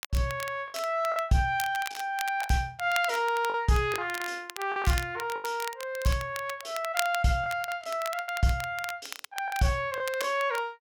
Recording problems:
crackling; vinyl, SNR 12 dB
lost packets; 7% of the sound replaced, filled with the last packet

